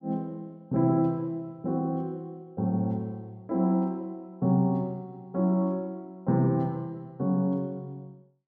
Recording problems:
none

